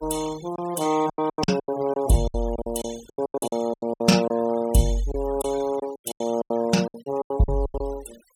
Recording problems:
noise reduction artefacts; signal-to-artefact ratio 17 dB
lost packets; 18% of the sound replaced, filled with silence

